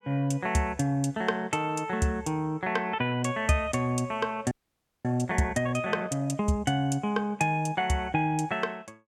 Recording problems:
audio freezing; at 4.5 s for 0.5 s

